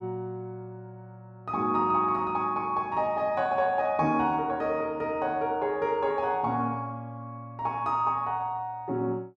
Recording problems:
none

